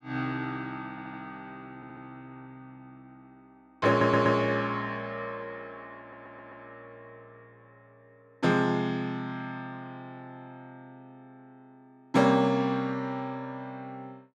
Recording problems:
stutter; 4 times, first at 1 s

